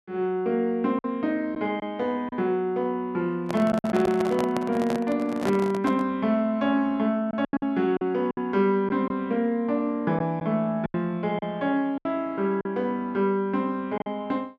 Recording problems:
lost packets; 5% of the sound replaced, filled with silence
handling noise; from 3.5 to 6 s; peak 0 dB vs average level

